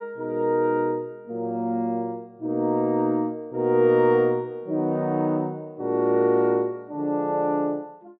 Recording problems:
none

